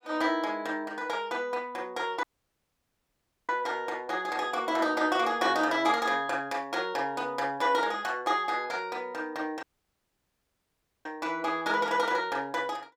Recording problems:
audio cutting out; at 2 s for 1.5 s and at 9.5 s for 1.5 s

